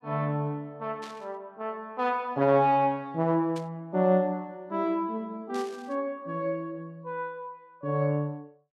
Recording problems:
static burst; at 1 s, at 3.5 s and at 5.5 s; peak -11 dB vs average level

